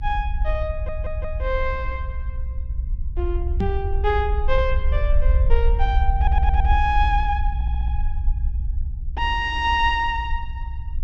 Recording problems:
low-frequency rumble; below 64 Hz, SNR 0 dB
audio stuttering; at 0.5 s, at 6 s and at 7.5 s
microphone bump; at 3.5 s; peak +4 dB vs average level

